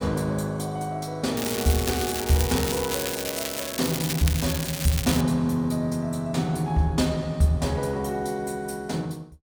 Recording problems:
crackling; from 1.5 to 5 s; loose cable, SNR 4 dB

